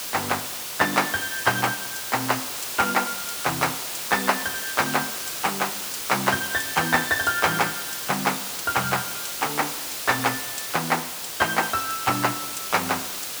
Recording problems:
background hiss; slope 0 dB per octave, SNR 4 dB

